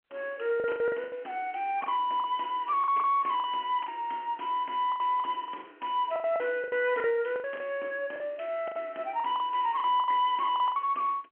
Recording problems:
telephone audio; 260 Hz to 3.2 kHz, G.711
distorted audio; soft clipping, signal-to-distortion ratio 9 dB
lost packets; 13% of the sound replaced, filled with the last packet

